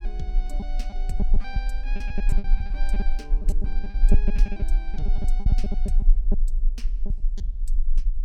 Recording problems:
rumble; below 36 Hz, strongest tone 26 Hz, SNR -13 dB
packet loss; 13% of the sound replaced, filled with repeated pitch periods

